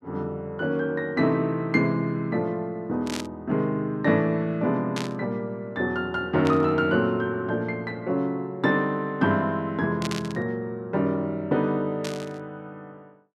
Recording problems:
static burst; 5 times, first at 3 s; peak -2 dB vs average level

